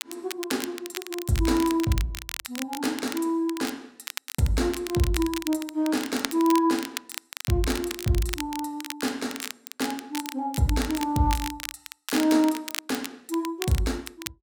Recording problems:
crackling; vinyl, SNR 9 dB

